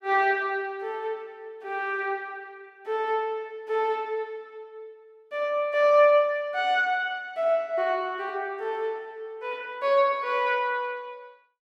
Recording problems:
none

